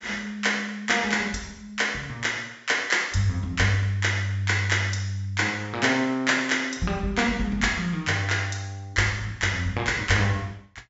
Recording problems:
treble cut off; nothing above 8 kHz

